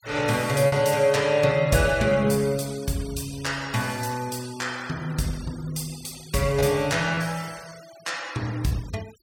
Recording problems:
denoising artefacts; signal-to-artefact ratio 20 dB
packet loss; 1.3% of the sound replaced, filled with repeated pitch periods

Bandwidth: 17 kHz